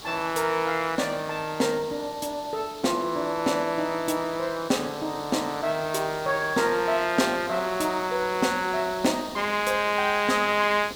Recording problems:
background hiss; SNR 15 dB

